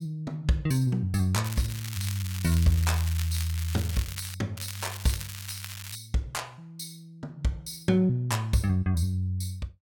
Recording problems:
crackle; from 1.5 to 4.5 s and from 4.5 to 6 s; loose cable, SNR 10 dB

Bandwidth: 17.5 kHz